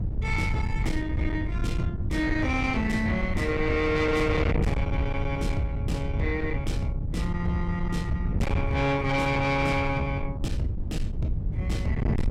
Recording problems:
distortion; soft clipping, signal-to-distortion ratio 6 dB
wind noise; below 140 Hz, SNR 2 dB

